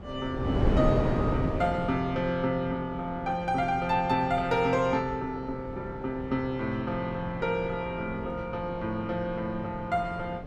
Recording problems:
wind noise; below 420 Hz, SNR 6 dB

